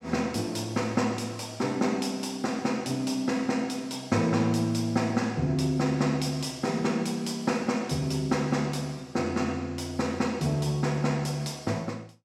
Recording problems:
none

